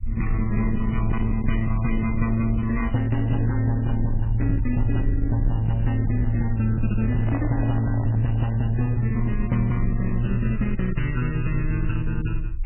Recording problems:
lossy compression; MP3, log-spectral distance 2 dB, nothing above 2.9 kHz
distortion; soft clipping, signal-to-distortion ratio 11 dB
low-frequency rumble; below 56 Hz, SNR 7 dB
handling noise; from 7 to 8.5 s; peak -6 dB vs average level

